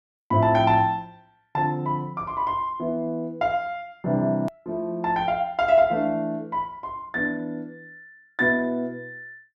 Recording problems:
hard cut with a click; at 4.5 s

